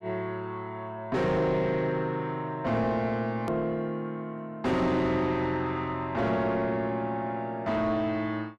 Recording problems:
distortion; soft clipping, signal-to-distortion ratio 8 dB
edit click; at 3.5 s

